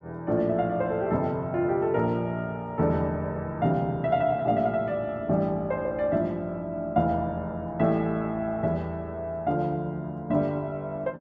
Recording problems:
none

